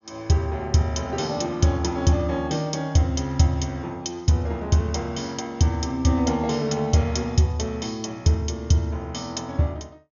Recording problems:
treble cut off; nothing above 6.9 kHz

